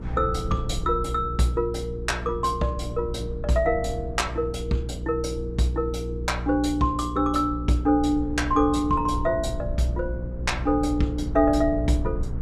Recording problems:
electrical hum; 60 Hz, harmonics up to 480 Hz, SNR 8 dB
low-frequency rumble; below 100 Hz, SNR 12 dB

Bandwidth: 14.5 kHz